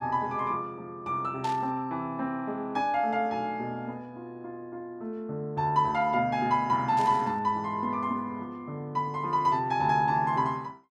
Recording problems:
static burst; at 1.5 s and at 7 s; peak -9 dB vs average level

